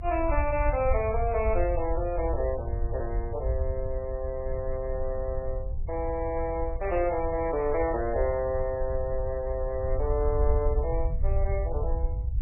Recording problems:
lossy codec; MP2, then MP3, log-spectral distance 2 dB, nothing above 2.4 kHz
low-frequency rumble; below 66 Hz, SNR 3 dB

